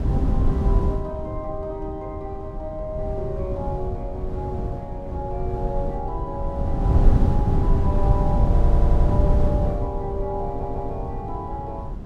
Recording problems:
wind on the microphone; below 110 Hz, SNR -6 dB
audio stuttering; at 8.5 s and at 10 s

